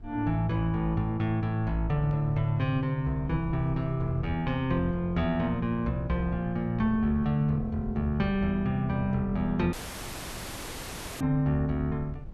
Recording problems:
wind on the microphone; below 94 Hz, SNR 17 dB
dropout; at 9.5 s for 1.5 s

